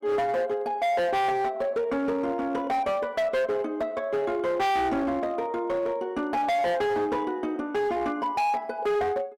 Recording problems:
distorted audio; hard clipping, signal-to-distortion ratio 8 dB

